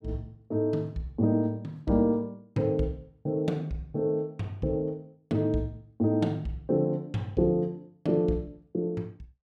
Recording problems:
none

